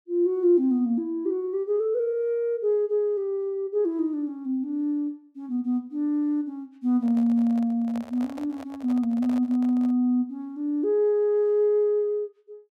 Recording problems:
handling noise; from 7 to 10 s; peak -12 dB vs average level

